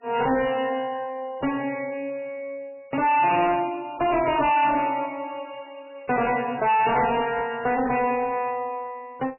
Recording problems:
lossy codec; MP3, log-spectral distance 4 dB, nothing above 2.4 kHz
distortion; hard clipping, uneven, signal-to-distortion ratio 6 dB

